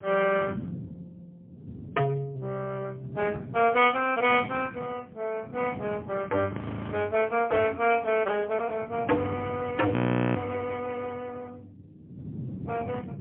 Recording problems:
telephone audio; 150 Hz to 3.3 kHz, AMR-NB, then MP3
wind on the microphone; below 260 Hz, SNR 13 dB
audio freezing; at 6.5 s and at 10 s

